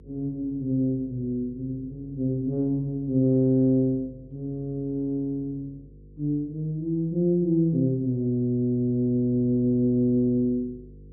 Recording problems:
hum; 50 Hz, harmonics up to 500 Hz, SNR 24 dB

